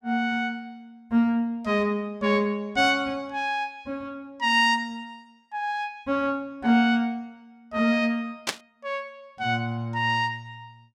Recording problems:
static burst; at 8.5 s; peak +4 dB vs average level

